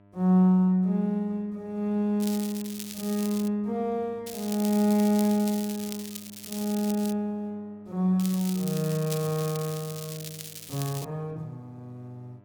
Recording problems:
electrical hum; 50 Hz, harmonics up to 1.7 kHz, SNR 29 dB
crackling; from 2 to 3.5 s, from 4.5 to 7 s and from 8 to 11 s; loose cable, SNR 12 dB

